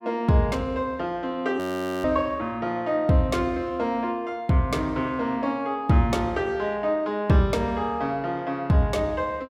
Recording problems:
frozen audio; at 1.5 s

